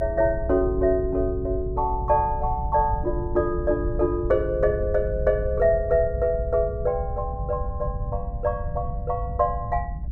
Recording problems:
rumble; below 100 Hz, SNR 7 dB

